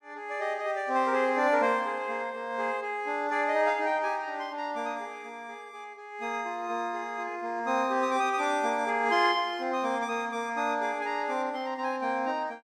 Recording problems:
none

